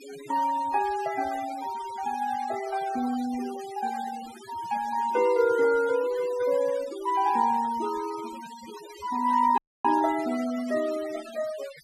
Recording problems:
noise reduction artefacts; signal-to-artefact ratio 17 dB
audio cutting out; at 9.5 s

